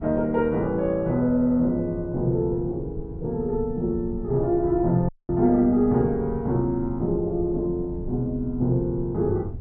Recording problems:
wind noise; below 120 Hz, SNR 14 dB
audio cutting out; at 5 s

